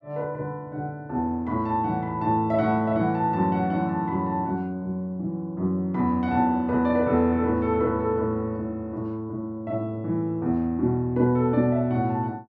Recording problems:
none

